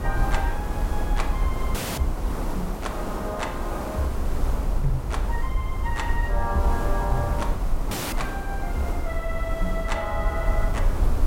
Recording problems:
hiss; SNR 3 dB
rumble; below 58 Hz, SNR -2 dB
dropout; at 1.5 s and at 8 s

